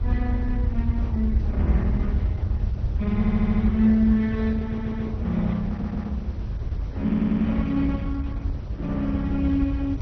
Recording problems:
codec artefacts; Opus, then MP2, log-spectral distance 2 dB
background hiss; slope -7 dB per octave, SNR 19 dB
low-frequency rumble; below 84 Hz, SNR 2 dB
audio stuttering; 4 times, first at 3 s

